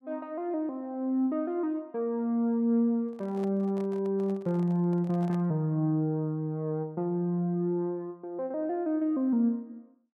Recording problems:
microphone handling noise; from 3 to 5.5 s; peak -12 dB vs average level

